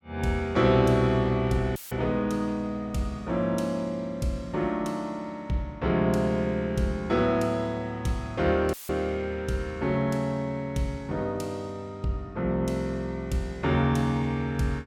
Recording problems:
audio cutting out; at 2 s and at 8.5 s; filled with static

